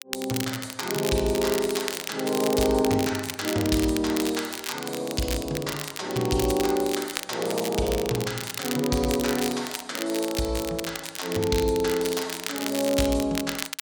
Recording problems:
crackling; vinyl, SNR 7 dB

